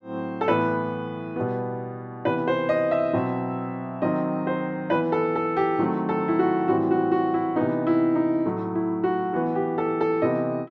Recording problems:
none

